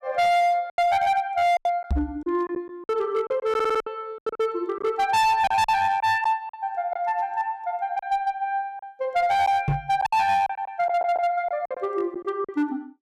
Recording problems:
distortion; hard clipping, signal-to-distortion ratio 8 dB
lost packets; 9% of the sound replaced, filled with silence
knock on the microphone; at 2 s and at 9.5 s; peak +3 dB vs average level
stutter; at 3.5 s and at 11 s

